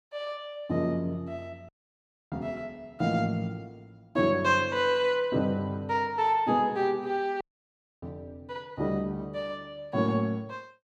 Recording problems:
dropout; at 1.5 s for 0.5 s and at 7.5 s for 0.5 s

